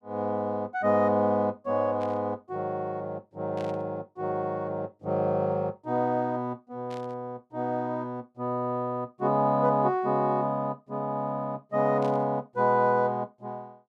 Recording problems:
static burst; 4 times, first at 2 s; peak -14 dB vs average level

